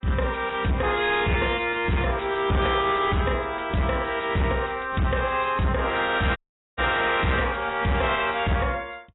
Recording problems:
codec artefacts; AAC, log-spectral distance 8 dB, nothing above 3.8 kHz
distortion; soft clipping, signal-to-distortion ratio 7 dB
dropout; at 6.5 s

